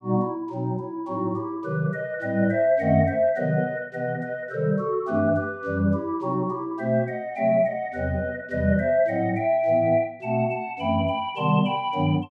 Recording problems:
none

